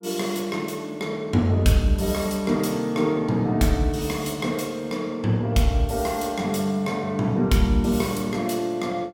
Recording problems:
none

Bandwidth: 17 kHz